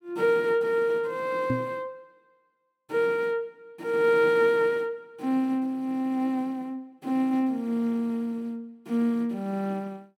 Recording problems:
microphone bump; at 1.5 s; peak +2 dB vs average level

